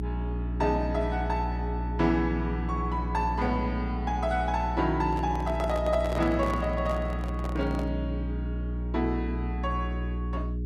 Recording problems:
electrical hum; 60 Hz, harmonics up to 420 Hz, SNR 3 dB
handling noise; from 5 to 8 s; peak -3 dB vs average level

